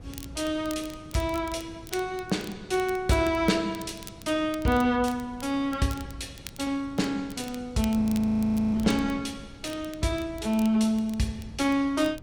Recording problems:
wind noise; below 270 Hz, SNR 18 dB
crackle; vinyl, SNR 19 dB
frozen audio; at 8 s for 0.5 s

